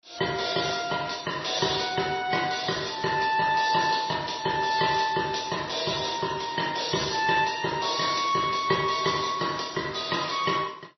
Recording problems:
codec artefacts; MP3, then AAC, log-spectral distance 10 dB, nothing above 5.8 kHz

